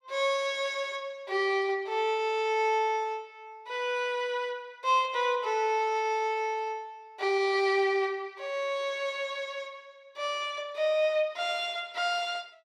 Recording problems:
none

